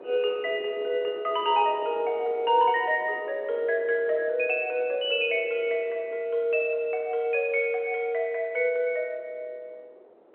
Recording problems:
telephone audio; 300 Hz to 3.2 kHz, G.711
wind on the microphone; below 610 Hz, SNR 20 dB

